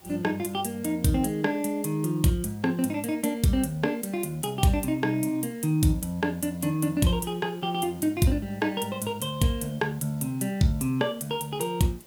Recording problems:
hiss; SNR 25 dB

